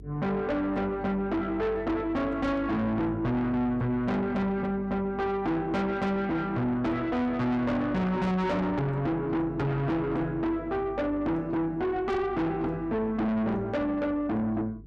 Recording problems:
distortion; soft clipping, signal-to-distortion ratio 6 dB
hum; 50 Hz, harmonics up to 450 Hz, SNR 19 dB

